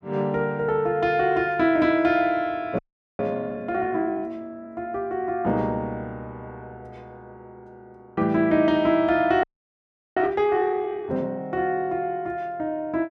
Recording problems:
audio freezing; at 3 s and at 9.5 s for 0.5 s

